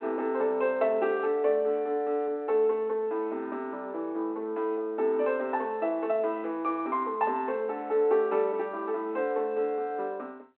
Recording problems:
telephone audio; 280 Hz to 3.6 kHz, G.726

